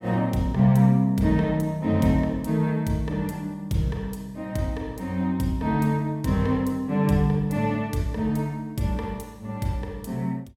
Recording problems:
none

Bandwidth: 16.5 kHz